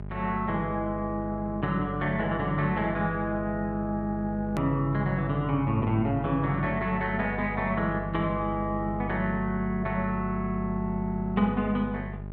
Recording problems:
electrical hum; 50 Hz, harmonics up to 850 Hz, SNR 9 dB
click at an edit; at 4.5 s

